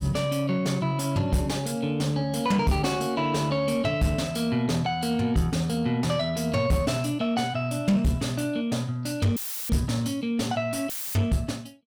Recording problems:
distorted audio; soft clipping, signal-to-distortion ratio 10 dB
dropout; at 9.5 s and at 11 s; filled with static

